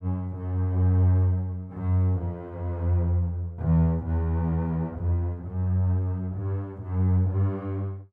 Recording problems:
none

